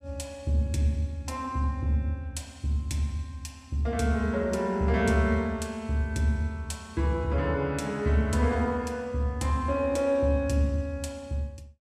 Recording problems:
none

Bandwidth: 15 kHz